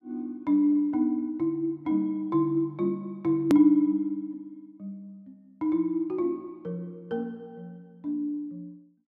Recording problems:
edit click; at 3.5 s

